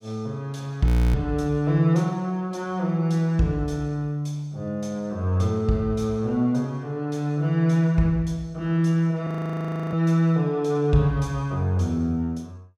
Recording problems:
frozen audio; at 1 s and at 9.5 s for 0.5 s

